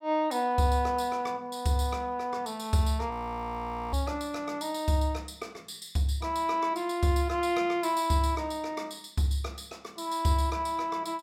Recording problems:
audio freezing; at 3 s for 1 s

